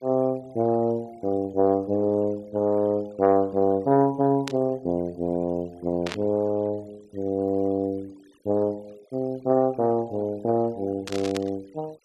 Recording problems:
denoising artefacts; signal-to-artefact ratio 28 dB
static burst; at 4.5 s, at 6 s and at 11 s; peak -4 dB vs average level

